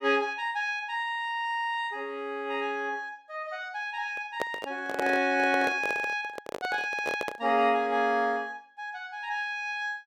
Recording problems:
handling noise; from 4 to 7.5 s; peak +2 dB vs average level

